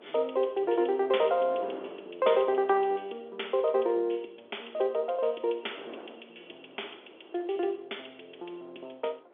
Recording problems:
telephone audio; 300 Hz to 3.5 kHz, G.711
wind on the microphone; below 700 Hz, SNR 22 dB

